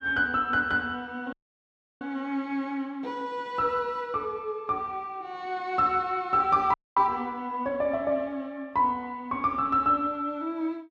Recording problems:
dropout; at 1.5 s for 0.5 s and at 6.5 s

